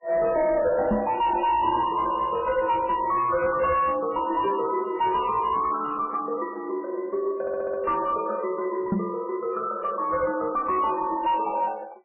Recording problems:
lossy codec; MP3, log-spectral distance 3 dB, nothing above 2.4 kHz
distortion; soft clipping, signal-to-distortion ratio 10 dB
knock on the microphone; at 1 s and at 9 s; peak +4 dB vs average level
audio stuttering; at 7.5 s

